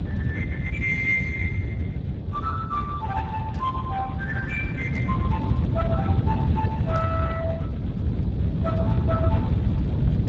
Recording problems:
lossy codec; Speex, log-spectral distance 3 dB
low-frequency rumble; below 190 Hz, SNR -3 dB
static burst; at 3.5 s, at 5 s and at 7 s; peak -13 dB vs average level

